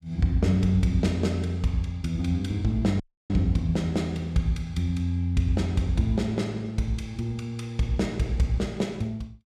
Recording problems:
audio cutting out; at 3 s

